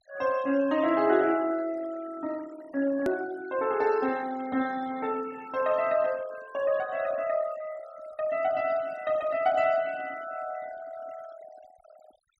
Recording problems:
denoising artefacts; signal-to-artefact ratio 21 dB
hard cut with a click; at 3 s

